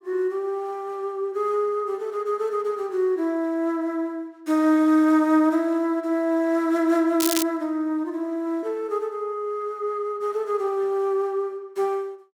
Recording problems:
crackle; at 7 s; loose cable, SNR 4 dB

